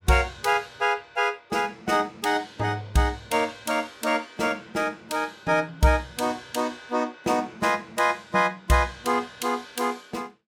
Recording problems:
none

